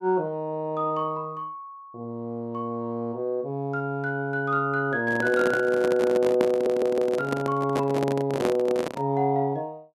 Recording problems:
handling noise; from 5 to 9 s; peak +2 dB vs average level
stutter; at 6.5 s

